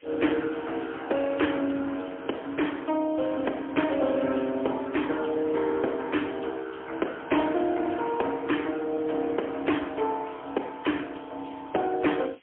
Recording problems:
phone line; 240 Hz to 3.3 kHz, AMR-NB, then MP3
hiss; SNR 27 dB

